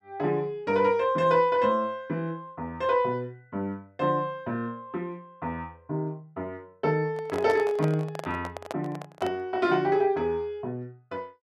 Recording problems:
handling noise; from 7 to 9.5 s; peak 0 dB vs average level

